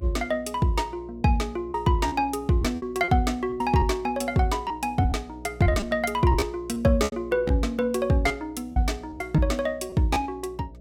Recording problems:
hum; 60 Hz, harmonics up to 660 Hz, SNR 21 dB
packet loss; 7% of the sound replaced, filled with repeated pitch periods

